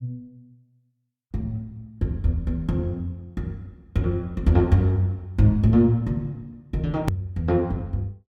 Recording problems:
click at an edit; at 7 s

